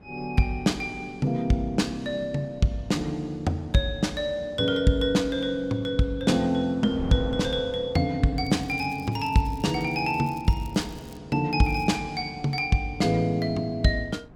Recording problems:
wind on the microphone; below 350 Hz, SNR 21 dB
crackle; from 8.5 to 11 s and at 12 s; loose cable, SNR 27 dB

